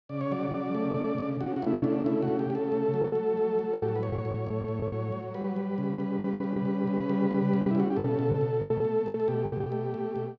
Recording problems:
lost packets; 11% of the sound replaced, filled with the last packet

